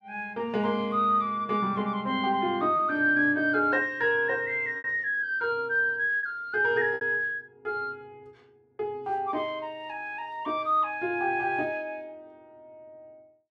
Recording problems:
lost packets; 1.8% of the sound replaced, filled with repeated pitch periods

